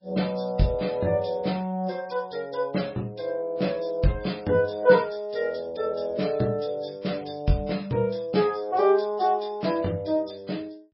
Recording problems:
codec artefacts; MP3, log-spectral distance 3 dB, nothing above 5.5 kHz

